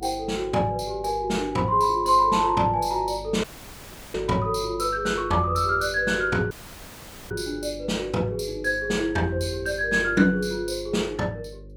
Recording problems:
hum; 50 Hz, harmonics up to 550 Hz, SNR 19 dB
audio cutting out; at 3.5 s for 0.5 s and at 6.5 s for 1 s

